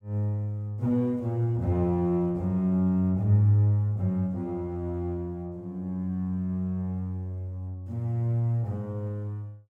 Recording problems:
none

